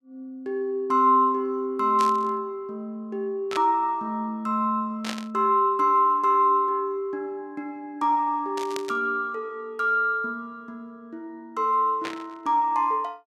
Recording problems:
burst of static; 5 times, first at 2 s; peak -4 dB vs average level

